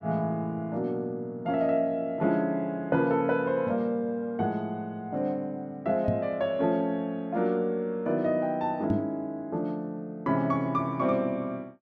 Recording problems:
knock on the microphone; at 6 s and at 9 s; peak +4 dB vs average level

